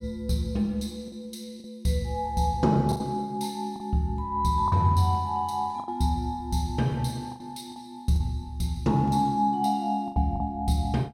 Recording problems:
lost packets; 5% of the sound replaced, filled with the last packet

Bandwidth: 16.5 kHz